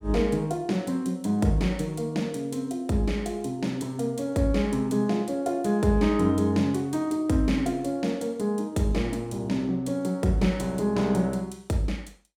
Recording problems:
none

